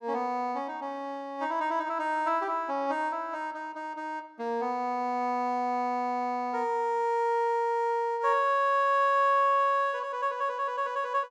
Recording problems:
none

